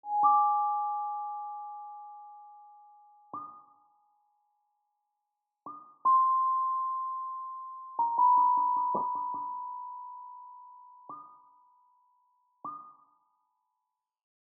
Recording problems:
burst of static; at 9 s; peak -2 dB vs average level

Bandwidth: 1 kHz